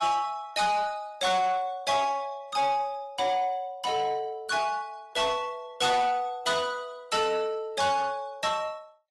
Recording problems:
codec artefacts; Vorbis, then AAC, log-spectral distance 3 dB, nothing above 11.6 kHz
distortion; soft clipping, signal-to-distortion ratio 11 dB

